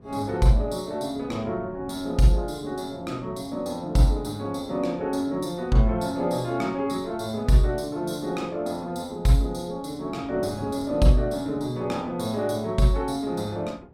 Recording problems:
wind noise; below 320 Hz, SNR 21 dB

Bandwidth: 16 kHz